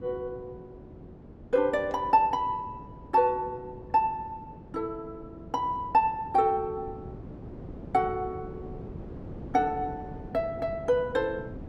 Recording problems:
wind on the microphone; below 350 Hz, SNR 16 dB

